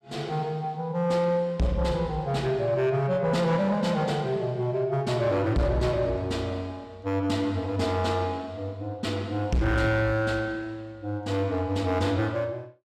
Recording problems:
distorted audio; soft clipping, signal-to-distortion ratio 11 dB

